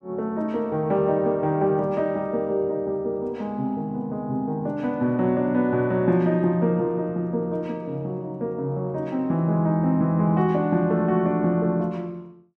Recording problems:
none

